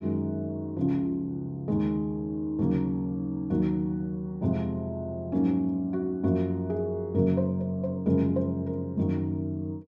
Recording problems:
none

